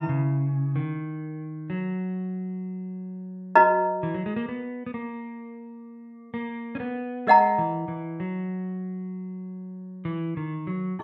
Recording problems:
none

